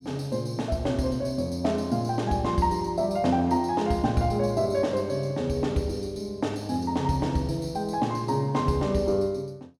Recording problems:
none

